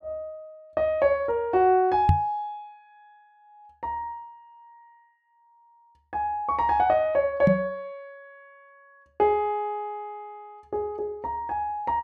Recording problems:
knock on the microphone; at 2 s and at 7.5 s; peak +9 dB vs average level

